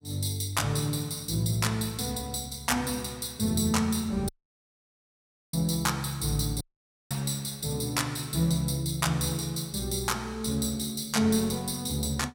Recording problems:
dropout; at 4.5 s for 1 s and at 6.5 s for 0.5 s

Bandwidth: 16.5 kHz